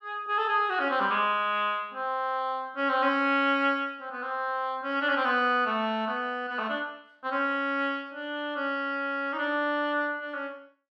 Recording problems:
none

